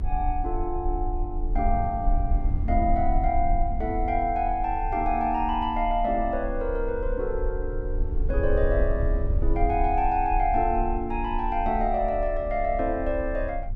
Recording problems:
low-frequency rumble; below 56 Hz, strongest tone 30 Hz, SNR 4 dB

